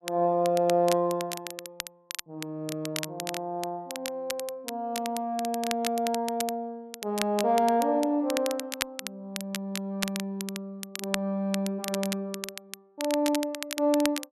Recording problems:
crackle; vinyl, SNR 8 dB

